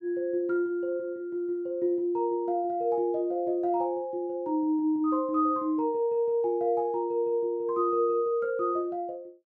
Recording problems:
none

